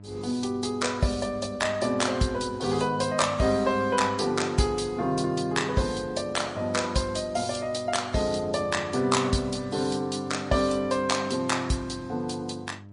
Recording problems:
codec artefacts; MP3, log-spectral distance 3 dB, nothing above 10.4 kHz
hum; 50 Hz, harmonics up to 1 kHz, SNR 20 dB

